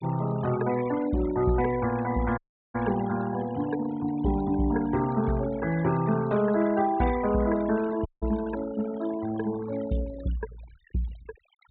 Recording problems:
low-pass filter; nothing above 4 kHz
noise reduction artefacts; signal-to-artefact ratio 15 dB
dropout; at 2.5 s and at 8 s

